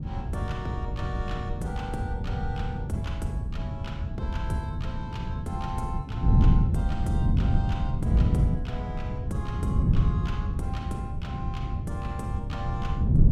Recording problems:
wind noise; below 150 Hz, SNR -8 dB

